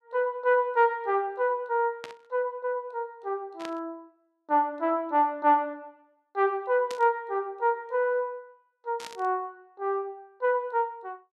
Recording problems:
burst of static; 4 times, first at 2 s; peak -8 dB vs average level

